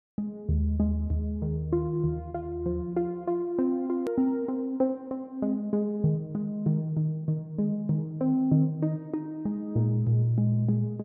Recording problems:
edit click; at 4 s

